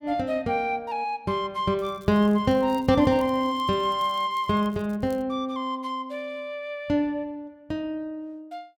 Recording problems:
crackle; from 2 to 5 s; loose cable, SNR 28 dB

